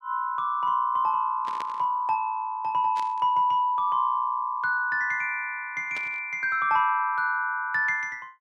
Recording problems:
static burst; at 1.5 s, at 3 s and at 6 s; peak -10 dB vs average level

